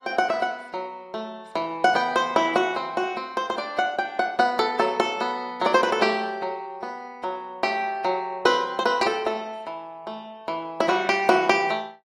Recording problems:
lossy compression; AAC, log-spectral distance 2 dB, nothing above 16 kHz

